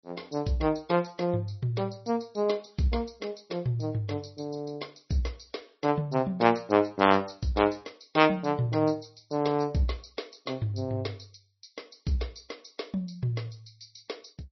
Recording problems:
lossy compression; MP3, log-spectral distance 6 dB, nothing above 5.8 kHz

